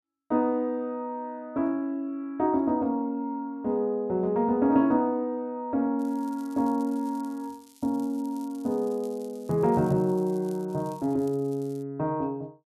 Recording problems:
crackle; from 6 to 12 s; loose cable, SNR 27 dB

